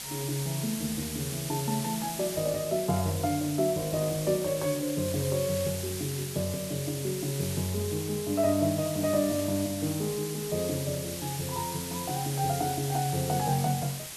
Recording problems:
hiss; slope +1 dB per octave, SNR 6 dB

